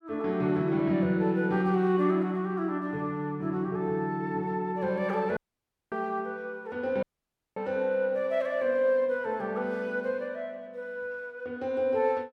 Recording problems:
dropout; at 5.5 s for 0.5 s and at 7 s for 0.5 s

